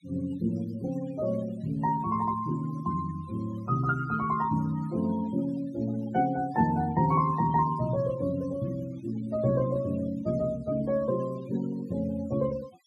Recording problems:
denoising artefacts; signal-to-artefact ratio 20 dB

